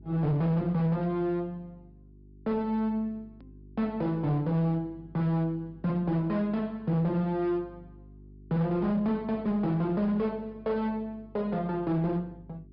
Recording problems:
treble cut off; nothing above 5.5 kHz
distorted audio; hard clipping, signal-to-distortion ratio 11 dB
mains hum; 50 Hz, harmonics up to 400 Hz, SNR 23 dB
click at an edit; at 3.5 s

